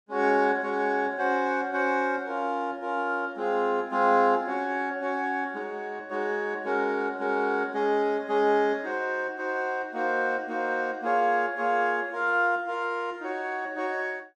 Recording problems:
none

